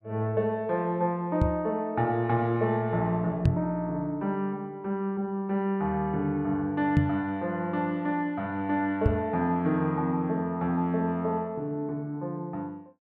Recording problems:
microphone bump; 4 times, first at 1.5 s; peak +8 dB vs average level

